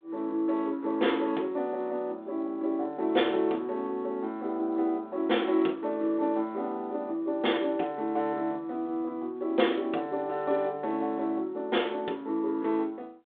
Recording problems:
phone line; 280 Hz to 3.6 kHz, G.726

